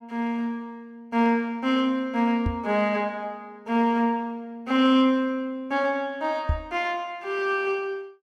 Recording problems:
microphone bump; at 2.5 s and at 6.5 s; peak +3 dB vs average level

